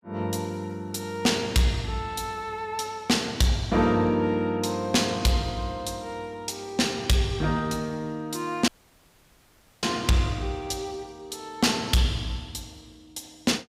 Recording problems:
distorted audio; hard clipping, signal-to-distortion ratio 11 dB
dropout; at 8.5 s for 1 s

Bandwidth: 15.5 kHz